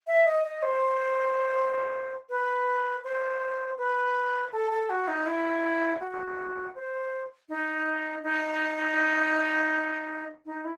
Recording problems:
lossy compression; Opus, log-spectral distance 4 dB

